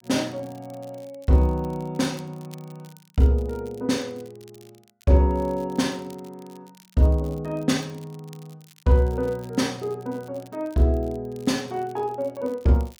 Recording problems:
crackle; vinyl, SNR 29 dB

